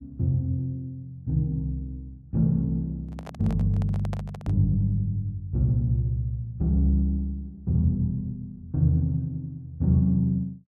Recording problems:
microphone handling noise; from 3 to 4.5 s; peak -8 dB vs average level

